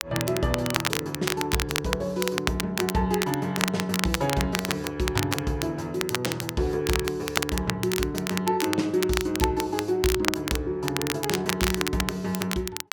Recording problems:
crackling; vinyl, SNR 3 dB

